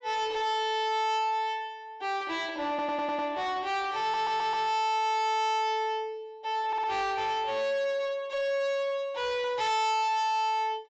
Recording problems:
low-pass filter; nothing above 8 kHz
distorted audio; soft clipping, signal-to-distortion ratio 7 dB
stutter; at 2.5 s, at 4 s and at 6.5 s

